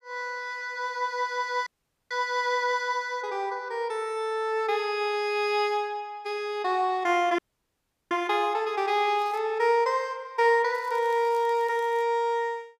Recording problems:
audio cutting out; at 1.5 s and at 7.5 s for 0.5 s
crackling; at 9 s and from 11 to 12 s; loose cable, SNR 28 dB

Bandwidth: 15 kHz